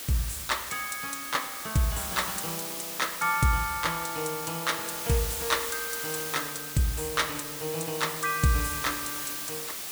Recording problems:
background hiss; slope 0 dB per octave, SNR 4 dB

